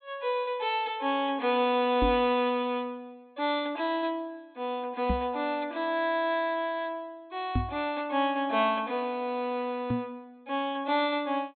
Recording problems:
treble missing; nothing above 4.1 kHz
knock on the microphone; 4 times, first at 2 s; peak +4 dB vs average level

